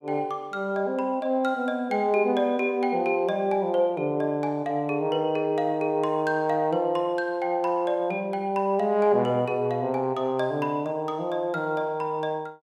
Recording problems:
none

